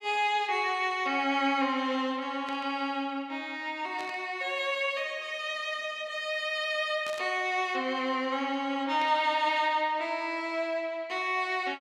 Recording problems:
static burst; 4 times, first at 2.5 s; peak -9 dB vs average level

